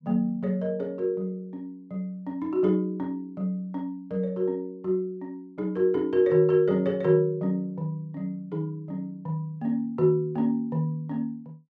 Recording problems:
none

